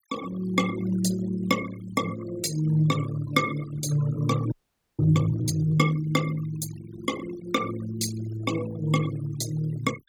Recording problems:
noise reduction artefacts; signal-to-artefact ratio 13 dB
frozen audio; at 4.5 s

